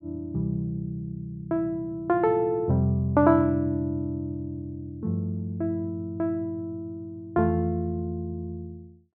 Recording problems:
none

